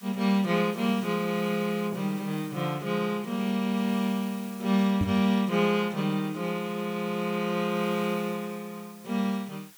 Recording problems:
hiss; SNR 21 dB
microphone thump; at 5 s; peak +2 dB vs average level

